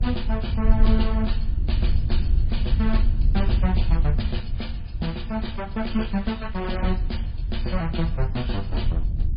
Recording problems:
codec artefacts; MP3, then MP2, log-spectral distance 2 dB, nothing above 4.9 kHz
low-frequency rumble; below 70 Hz, SNR -3 dB

